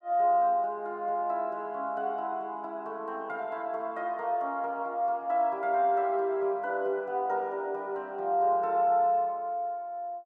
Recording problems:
none

